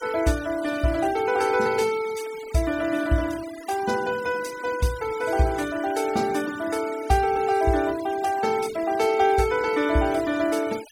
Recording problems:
noise reduction artefacts; signal-to-artefact ratio 17 dB

